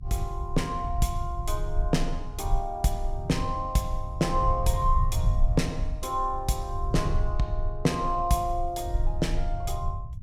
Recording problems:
low-frequency rumble; below 68 Hz, strongest tone 24 Hz, SNR 3 dB

